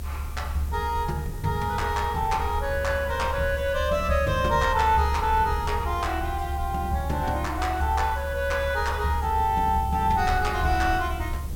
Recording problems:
background hiss; slope 0 dB per octave, SNR 21 dB
rumble; below 74 Hz, strongest tone 72 Hz, SNR 7 dB

